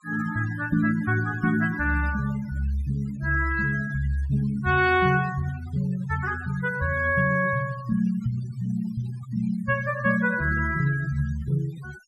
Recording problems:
denoising artefacts; signal-to-artefact ratio 19 dB

